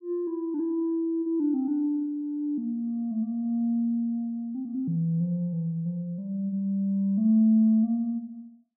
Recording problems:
none

